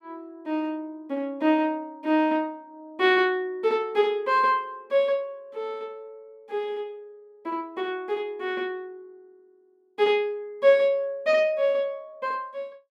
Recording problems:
none

